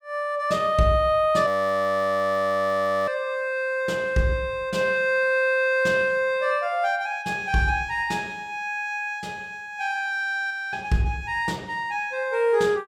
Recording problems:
frozen audio; at 1.5 s for 1.5 s and at 11 s

